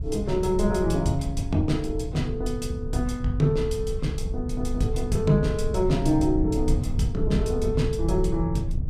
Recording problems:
wind noise; below 96 Hz, SNR 5 dB

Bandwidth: 15 kHz